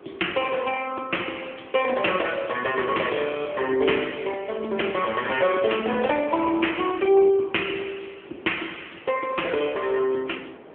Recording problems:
phone line; 280 Hz to 3.4 kHz, AMR-NB
wind noise; below 830 Hz, SNR 24 dB

